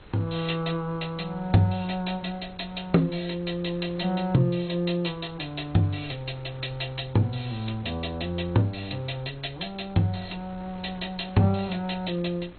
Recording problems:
lossy compression; MP2, log-spectral distance 8 dB, nothing above 4.2 kHz
wind noise; below 750 Hz, SNR 21 dB

